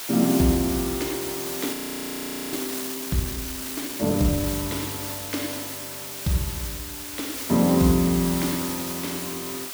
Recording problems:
background hiss; slope +1 dB per octave, SNR 5 dB
frozen audio; at 1.5 s for 1 s

